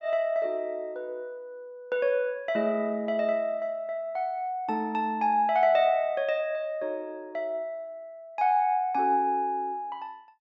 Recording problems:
low-pass filter; nothing above 8 kHz

